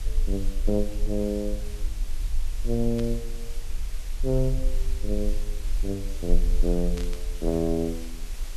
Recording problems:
background hiss; slope -1 dB per octave, SNR 15 dB
low-frequency rumble; below 38 Hz, strongest tone 22 Hz, SNR 3 dB
burst of static; at 3 s and at 7 s; peak -8 dB vs average level

